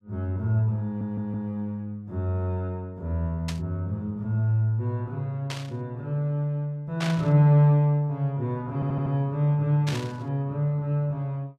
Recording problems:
stutter; at 1 s and at 8.5 s
burst of static; 4 times, first at 3.5 s; peak -3 dB vs average level

